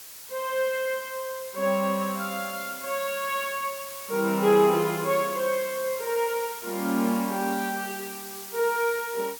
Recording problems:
hiss; slope +1 dB per octave, SNR 10 dB

